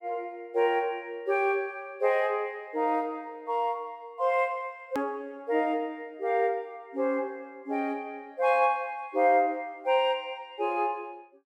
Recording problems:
hard cut with a click; at 5 s

